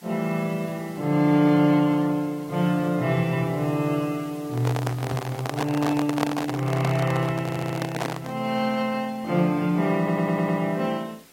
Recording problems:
codec artefacts; AAC, log-spectral distance 3 dB, nothing above 15.5 kHz
background hiss; SNR 24 dB
microphone handling noise; from 4.5 to 8.5 s; peak +3 dB vs average level
stutter; at 7.5 s and at 10 s

